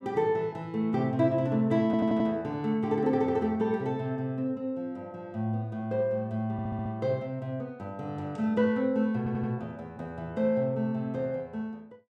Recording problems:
audio stuttering; at 2 s, at 6.5 s and at 9 s

